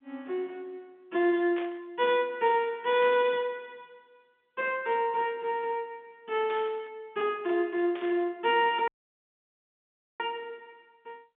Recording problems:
telephone audio; 190 Hz to 3.7 kHz, G.711
static burst; 4 times, first at 1.5 s; peak -10 dB vs average level
dropout; at 9 s for 1.5 s

